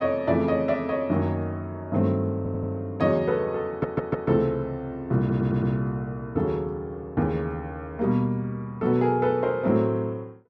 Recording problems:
audio stuttering; at 2.5 s, at 3.5 s and at 5 s

